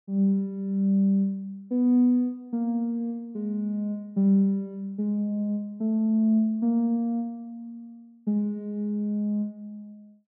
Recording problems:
none

